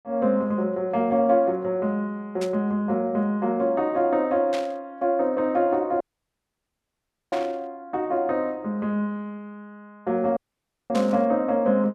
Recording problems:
burst of static; 4 times, first at 2.5 s; peak -6 dB vs average level
dropout; at 6 s for 1.5 s and at 10 s for 0.5 s

